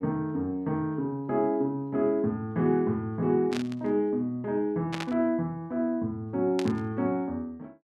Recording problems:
burst of static; at 3.5 s, at 5 s and at 6.5 s; peak -2 dB vs average level

